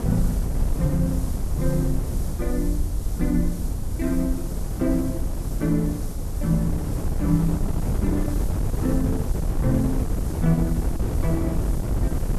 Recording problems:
background hiss; SNR 16 dB
rumble; below 56 Hz, SNR 7 dB
wind noise; below 150 Hz, SNR 1 dB

